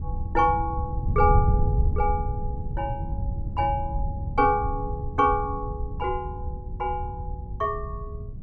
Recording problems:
wind noise; below 100 Hz, SNR 3 dB

